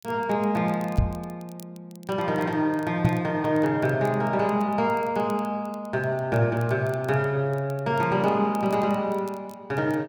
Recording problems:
crackle; vinyl, SNR 28 dB
microphone bump; at 1 s and at 3 s; peak +7 dB vs average level

